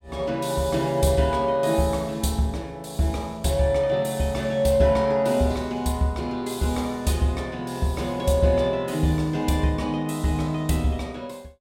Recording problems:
none

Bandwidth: 16.5 kHz